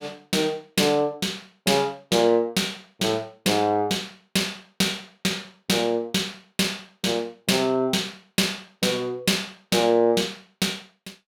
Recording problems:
none

